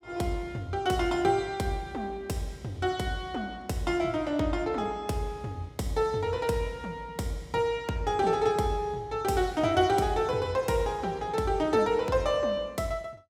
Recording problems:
none

